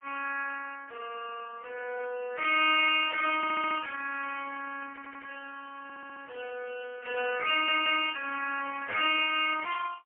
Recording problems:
telephone audio; 340 Hz to 3.1 kHz, AMR-NB, then MP3
audio stuttering; 4 times, first at 3.5 s

